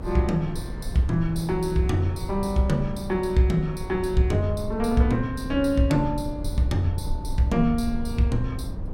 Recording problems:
low-frequency rumble; below 110 Hz, SNR 10 dB
wind noise; below 290 Hz, SNR 18 dB

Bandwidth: 16 kHz